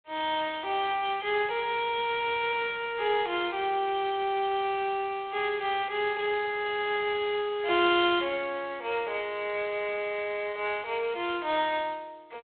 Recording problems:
phone line; 300 Hz to 3.4 kHz, G.726

